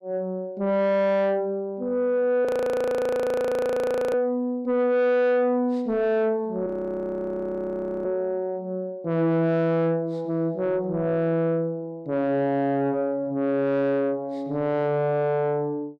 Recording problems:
distorted audio; soft clipping, signal-to-distortion ratio 7 dB
frozen audio; at 2.5 s for 1.5 s and at 6.5 s for 1.5 s

